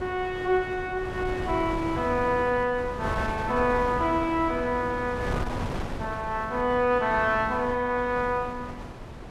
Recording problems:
wind on the microphone; below 700 Hz, SNR 9 dB

